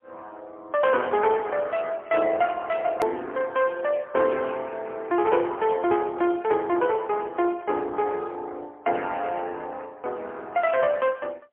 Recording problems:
telephone audio; 260 Hz to 3.3 kHz, AMR-NB, then MP3
click at an edit; at 3 s

